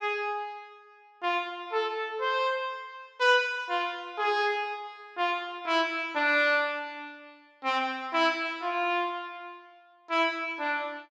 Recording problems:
none

